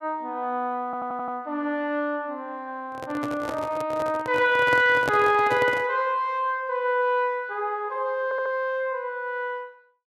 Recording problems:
stutter; at 1 s and at 8 s
microphone handling noise; from 3 to 6 s; peak +1 dB vs average level

